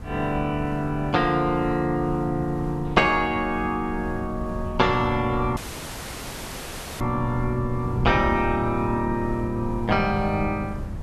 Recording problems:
hiss; SNR 22 dB
wind on the microphone; below 140 Hz, SNR 10 dB
audio cutting out; at 5.5 s for 1.5 s

